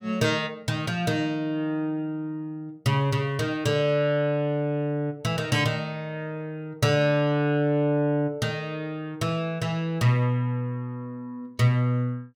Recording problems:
none

